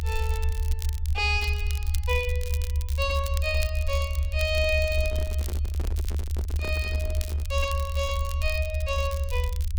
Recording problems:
low-frequency rumble; below 76 Hz, strongest tone 76 Hz, SNR -1 dB
crackle; vinyl, SNR 13 dB
handling noise; from 4.5 to 7.5 s; peak -4 dB vs average level

